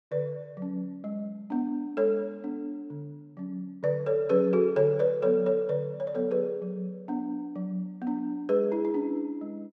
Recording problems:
none

